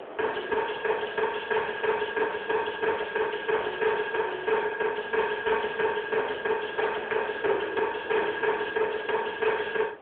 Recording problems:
phone line; 320 Hz to 3.4 kHz, AMR-NB
distorted audio; soft clipping, signal-to-distortion ratio 8 dB
wind noise; below 1.3 kHz, SNR 15 dB

